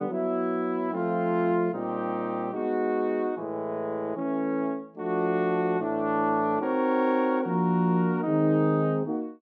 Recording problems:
none

